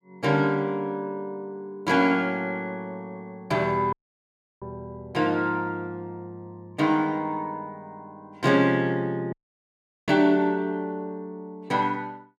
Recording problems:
audio cutting out; at 4 s for 0.5 s and at 9.5 s for 1 s

